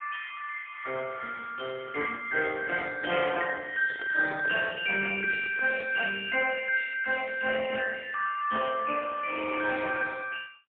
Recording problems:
phone line; 320 Hz to 3.1 kHz, AMR-NB, then MP3
handling noise; from 3 to 6 s; peak -7 dB vs average level

